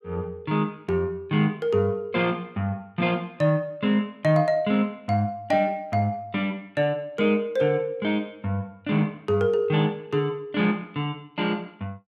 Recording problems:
none

